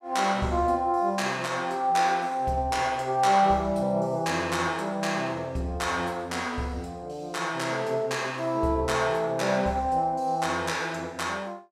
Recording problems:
none

